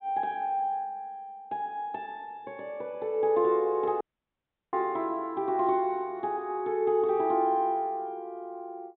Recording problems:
treble cut off; nothing above 4 kHz
audio cutting out; at 4 s for 0.5 s

